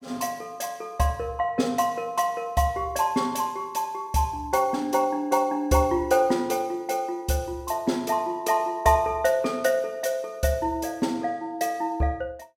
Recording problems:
none

